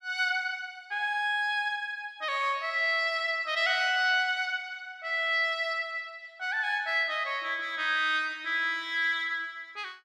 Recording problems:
none

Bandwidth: 13 kHz